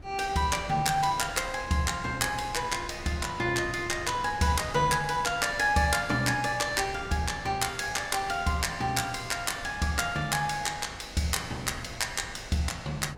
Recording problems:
wind on the microphone; below 320 Hz, SNR 17 dB

